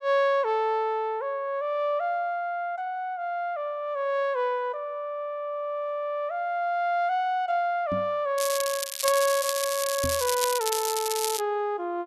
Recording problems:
microphone bump; at 8 s and at 10 s; peak -1 dB vs average level
crackling; from 8.5 to 11 s; loose cable, SNR 3 dB

